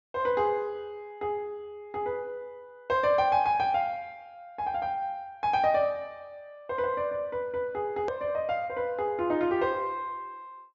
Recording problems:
treble cut off; nothing above 7.4 kHz
edit click; at 8 s

